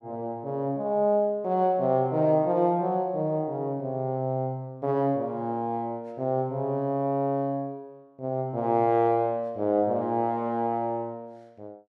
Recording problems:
none

